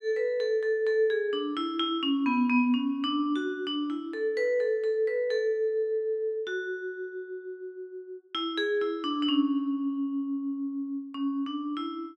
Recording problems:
none

